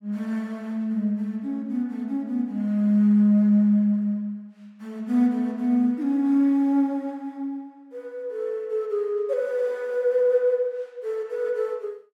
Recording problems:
none

